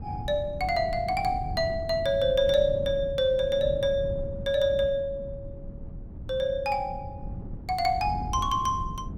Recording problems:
wind noise; below 160 Hz, SNR 11 dB

